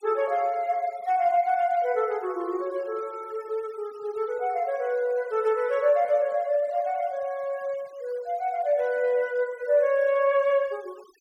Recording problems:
denoising artefacts; signal-to-artefact ratio 26 dB

